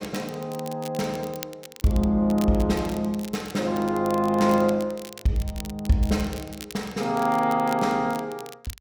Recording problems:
crackling; vinyl, SNR 18 dB

